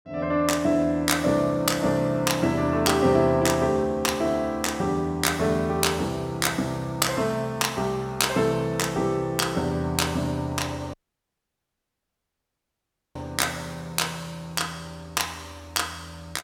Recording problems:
dropout; at 11 s for 2 s

